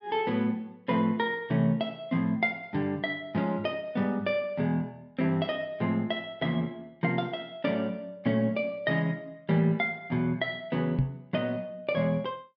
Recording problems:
treble cut off; nothing above 5.5 kHz
knock on the microphone; at 11 s; peak +7 dB vs average level

